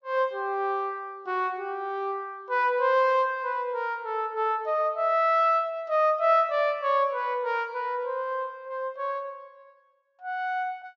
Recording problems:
treble missing; nothing above 8 kHz

